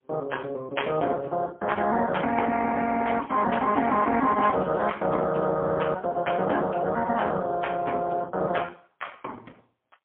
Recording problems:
telephone audio; 220 Hz to 3.3 kHz, AMR-NB, then MP3
crackle; from 3 to 5 s; loose cable, SNR 28 dB

